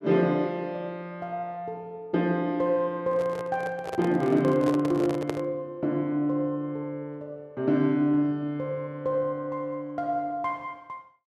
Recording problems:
handling noise; from 3 to 5.5 s; peak 0 dB vs average level

